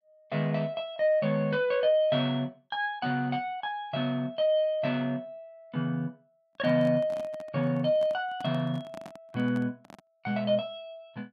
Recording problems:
handling noise; from 6.5 to 10 s; peak -11 dB vs average level

